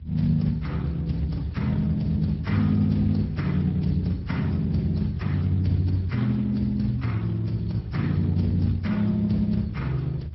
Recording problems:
treble cut off; nothing above 5.5 kHz
lossy compression; Vorbis, then Speex, log-spectral distance 2 dB
rumble; below 100 Hz, strongest tone 78 Hz, SNR 14 dB

